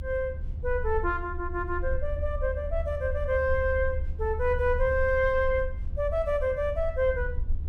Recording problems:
rumble; below 74 Hz, SNR 6 dB

